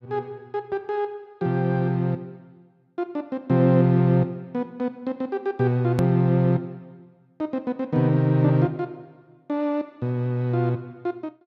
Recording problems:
hard cut with a click; at 6 s

